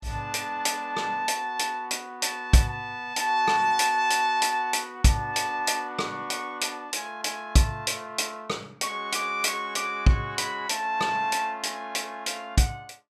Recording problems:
none

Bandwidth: 14.5 kHz